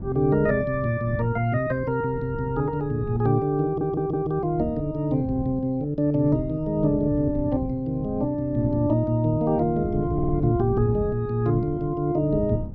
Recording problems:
wind noise; below 180 Hz, SNR 11 dB
stutter; at 3.5 s and at 10 s

